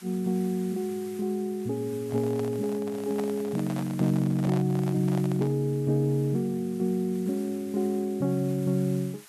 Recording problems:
background hiss; SNR 21 dB
microphone handling noise; from 2 to 5.5 s; peak -6 dB vs average level

